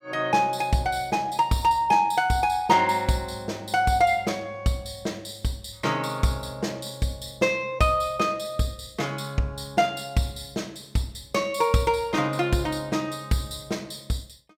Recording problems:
none

